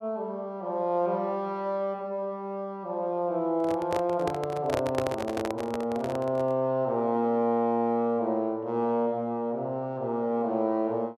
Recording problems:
handling noise; from 3.5 to 6.5 s; peak +3 dB vs average level

